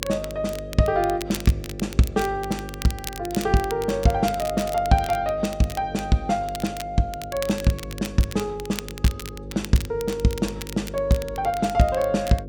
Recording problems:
hum; 50 Hz, harmonics up to 550 Hz, SNR 13 dB
crackle; vinyl, SNR 14 dB

